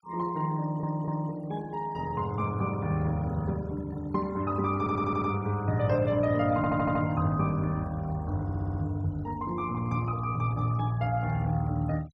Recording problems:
noise reduction artefacts; signal-to-artefact ratio 24 dB
audio stuttering; 4 times, first at 0.5 s

